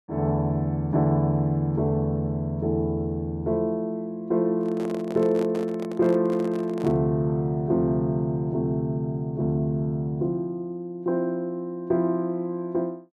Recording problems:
handling noise; from 4.5 to 7 s; peak -6 dB vs average level

